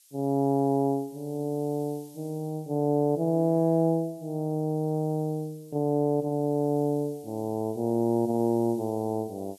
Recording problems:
background hiss; SNR 27 dB

